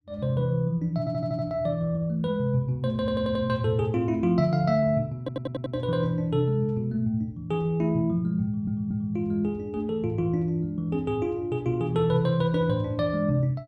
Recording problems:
audio stuttering; 4 times, first at 1 s

